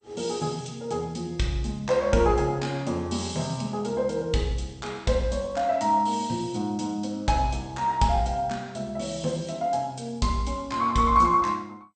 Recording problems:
lossy compression; MP2, log-spectral distance 3 dB, nothing above 8.5 kHz

